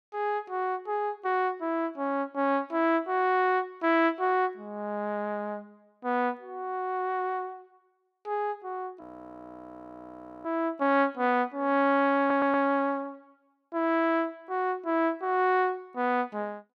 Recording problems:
audio freezing; at 9 s for 1.5 s
stutter; at 12 s

